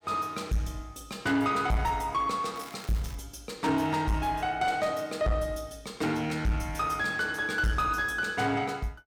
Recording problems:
distorted audio; soft clipping, signal-to-distortion ratio 11 dB
crackling; at 2.5 s; loose cable, SNR 20 dB

